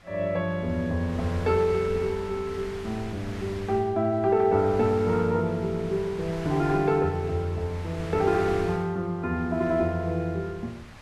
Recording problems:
wind noise; below 1.8 kHz, SNR 16 dB

